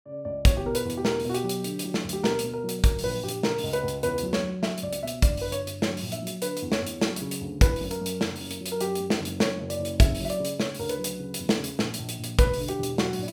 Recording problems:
none

